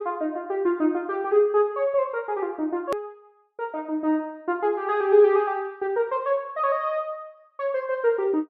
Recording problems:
click at an edit; at 3 s

